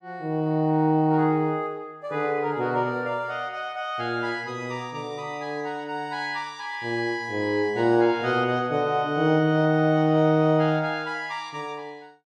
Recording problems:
none

